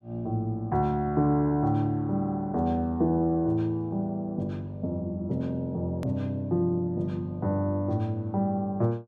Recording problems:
click at an edit; at 6 s

